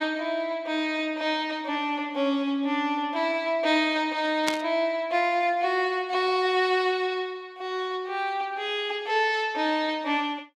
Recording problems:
static burst; at 4.5 s; peak +3 dB vs average level

